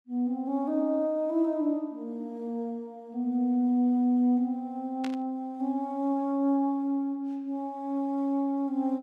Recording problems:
burst of static; at 5 s; peak -8 dB vs average level

